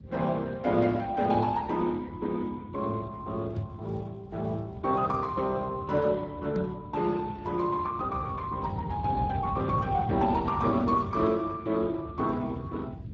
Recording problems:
codec artefacts; Speex, log-spectral distance 3 dB, nothing above 7.3 kHz
rumble; below 180 Hz, SNR 11 dB
microphone thump; at 3.5 s and at 6.5 s; peak +1 dB vs average level

